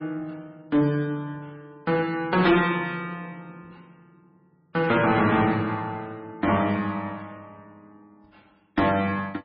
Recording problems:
codec artefacts; MP3, log-spectral distance 2 dB, nothing above 4.4 kHz
distorted audio; hard clipping, uneven, signal-to-distortion ratio 11 dB

